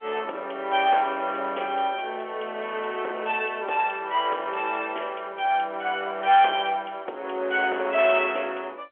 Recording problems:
phone line; 340 Hz to 3.4 kHz, G.711
distorted audio; soft clipping, signal-to-distortion ratio 14 dB

